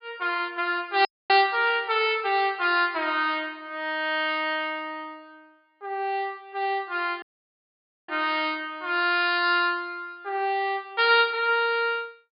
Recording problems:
treble missing; nothing above 5.1 kHz
dropout; at 1 s and at 7 s for 1 s

